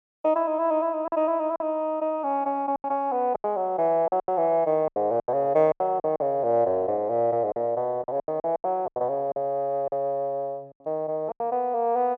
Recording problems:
packet loss; 10% of the sound replaced, filled with silence

